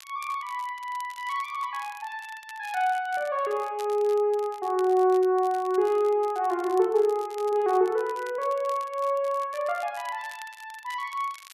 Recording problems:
crackle; vinyl, SNR 23 dB

